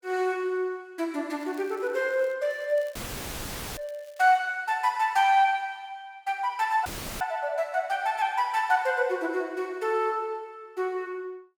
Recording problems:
crackling; at 1.5 s and from 2.5 to 4.5 s; loose cable, SNR 29 dB
dropout; at 3 s for 1 s and at 7 s; filled with static

